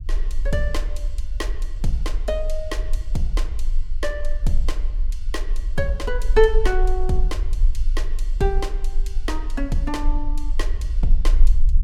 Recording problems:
rumble; below 38 Hz, strongest tone 16 Hz, SNR -1 dB

